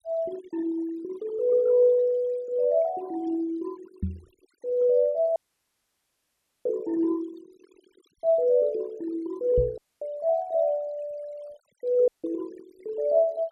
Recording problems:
noise reduction artefacts; signal-to-artefact ratio 26 dB
knock on the microphone; at 4 s and at 9.5 s; peak 0 dB vs average level
dropout; at 5.5 s for 1.5 s, at 10 s and at 12 s

